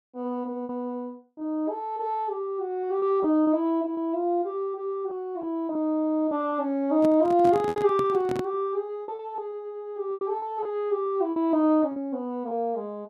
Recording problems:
packet loss; 7% of the sound replaced, filled with repeated pitch periods
handling noise; from 7 to 8.5 s; peak -3 dB vs average level

